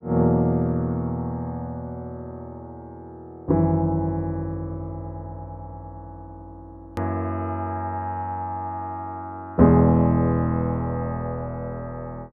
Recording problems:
click at an edit; at 7 s

